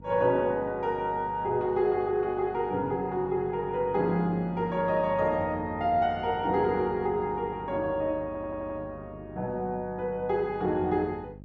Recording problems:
hum; 50 Hz, harmonics up to 650 Hz, SNR 19 dB
audio stuttering; at 8.5 s

